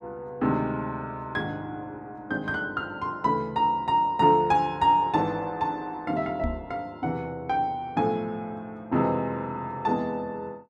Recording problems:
microphone thump; at 6.5 s; peak -1 dB vs average level

